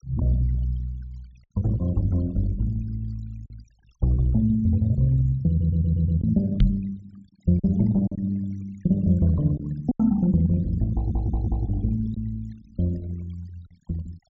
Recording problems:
treble missing; nothing above 8 kHz
denoising artefacts; signal-to-artefact ratio 26 dB
lost packets; 3% of the sound replaced, filled with silence
audio stuttering; at 5.5 s and at 11 s
microphone bump; at 6.5 s; peak +7 dB vs average level

